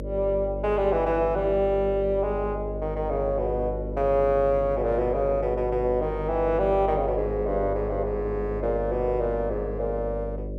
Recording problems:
electrical hum; 50 Hz, harmonics up to 600 Hz, SNR 8 dB

